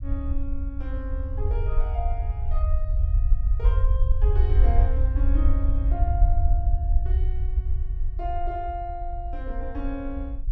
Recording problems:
rumble; below 64 Hz, SNR -10 dB

